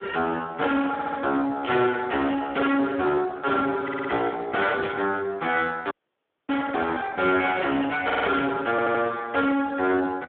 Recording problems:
telephone audio; 190 Hz to 2.8 kHz, Speex
distortion; hard clipping, uneven, signal-to-distortion ratio 7 dB
stutter; 4 times, first at 1 s
burst of static; at 1.5 s, at 5 s and at 7.5 s; peak -7 dB vs average level
audio cutting out; at 6 s for 0.5 s

